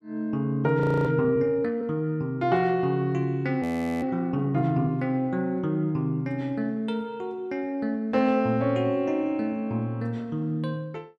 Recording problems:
audio freezing; at 1 s and at 3.5 s

